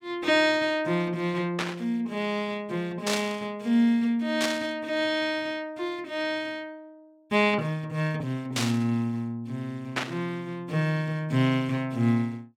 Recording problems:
static burst; 5 times, first at 1.5 s; peak +3 dB vs average level

